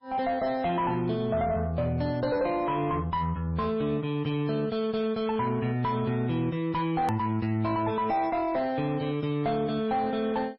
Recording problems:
codec artefacts; MP3, log-spectral distance 2 dB, nothing above 13.1 kHz
distorted audio; soft clipping, signal-to-distortion ratio 9 dB
hard cut with a click; at 7 s

